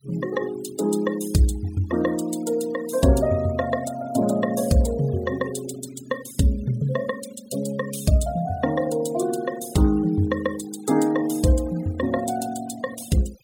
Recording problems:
noise reduction artefacts; signal-to-artefact ratio 17 dB

